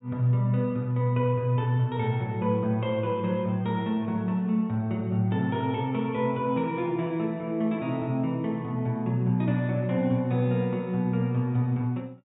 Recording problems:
treble cut off; nothing above 4 kHz

